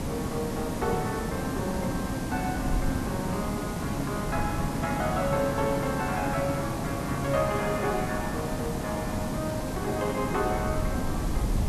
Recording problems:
hiss; SNR 1 dB
wind noise; below 88 Hz, SNR 10 dB

